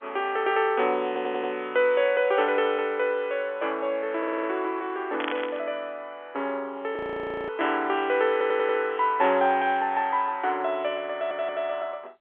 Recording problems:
telephone audio; 300 Hz to 3.5 kHz, G.711
stutter; 4 times, first at 1 s
static burst; at 5 s; peak -2 dB vs average level
frozen audio; at 7 s for 0.5 s

